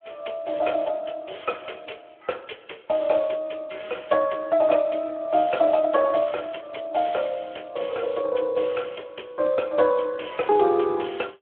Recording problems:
phone line; 260 Hz to 3.4 kHz, Speex

